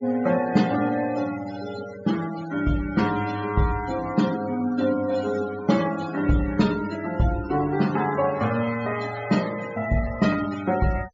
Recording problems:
treble cut off; nothing above 8 kHz
denoising artefacts; signal-to-artefact ratio 14 dB

